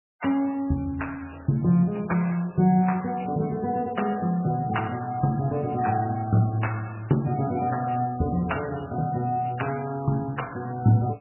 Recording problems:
lossy compression; MP3, log-spectral distance 6 dB, nothing above 2.9 kHz

